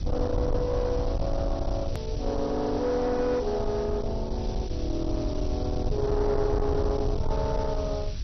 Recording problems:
codec artefacts; MP2, log-spectral distance 5 dB
distorted audio; soft clipping, signal-to-distortion ratio 10 dB
background hiss; slope +4 dB per octave, SNR 17 dB
rumble; below 110 Hz, SNR 3 dB
click at an edit; at 2 s

